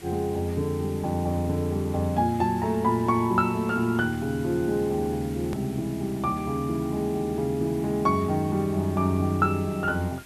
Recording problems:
background hiss; SNR 20 dB
hard cut with a click; at 5.5 s

